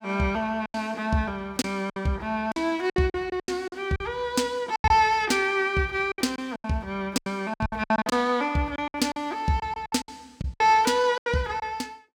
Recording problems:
lost packets; 13% of the sound replaced, filled with silence

